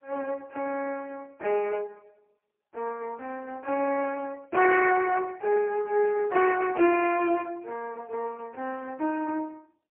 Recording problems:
telephone audio; 280 Hz to 3.1 kHz, AMR-NB, then MP3

